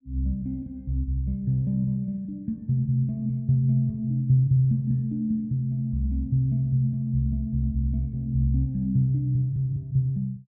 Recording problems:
none

